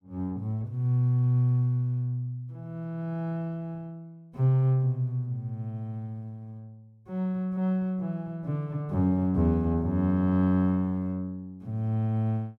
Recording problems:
none

